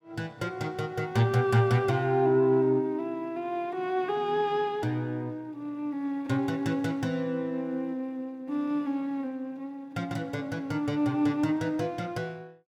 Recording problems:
none

